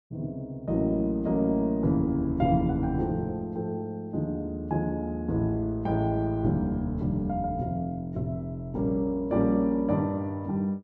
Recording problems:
none

